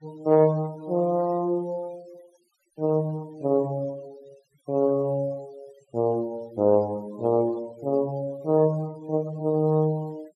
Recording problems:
noise reduction artefacts; signal-to-artefact ratio 26 dB

